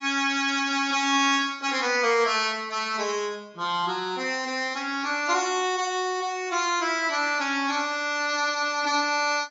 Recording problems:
codec artefacts; AAC, log-spectral distance 3 dB, nothing above 6.9 kHz

